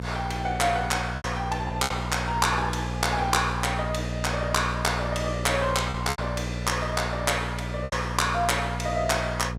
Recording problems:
hum; 60 Hz, harmonics up to 720 Hz, SNR 6 dB
lost packets; 4% of the sound replaced, filled with repeated pitch periods

